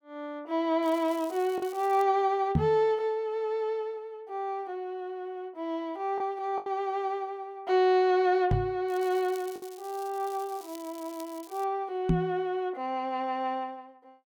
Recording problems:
lost packets; 1.4% of the sound replaced, filled with the last packet
crackle; from 1 to 2 s and from 9 to 12 s; loose cable, SNR 21 dB
microphone thump; at 2.5 s, at 8.5 s and at 12 s; peak +8 dB vs average level

